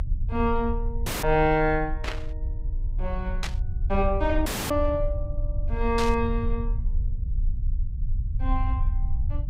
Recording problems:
low-frequency rumble; below 66 Hz, strongest tone 30 Hz, SNR 3 dB
dropout; at 1 s and at 4.5 s
static burst; at 2 s, at 3.5 s and at 6 s; peak -1 dB vs average level

